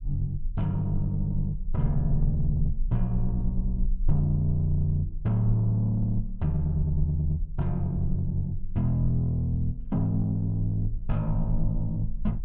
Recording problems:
low-frequency rumble; below 38 Hz, strongest tone 22 Hz, SNR 9 dB

